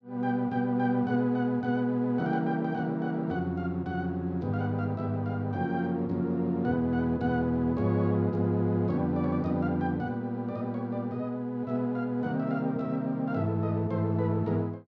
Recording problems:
none

